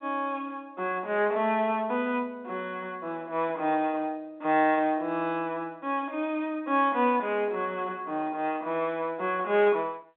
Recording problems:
telephone audio; 240 Hz to 3.6 kHz, G.711

